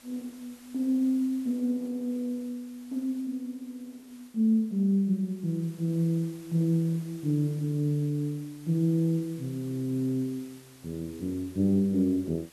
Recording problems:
hiss; slope -1 dB per octave, SNR 25 dB

